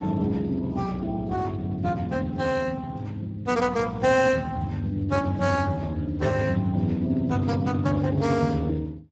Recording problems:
lossy compression; Speex, log-spectral distance 3 dB, nothing above 7.6 kHz

